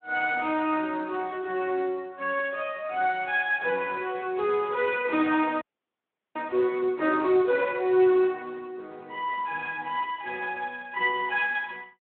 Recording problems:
phone line; 190 Hz to 3.7 kHz, Speex
frozen audio; at 5.5 s for 0.5 s

